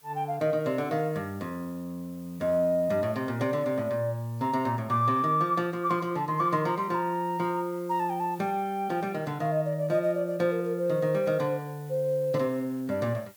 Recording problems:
background hiss; slope -1 dB per octave, SNR 26 dB

